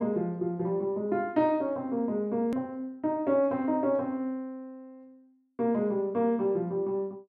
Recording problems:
click at an edit; at 2.5 s

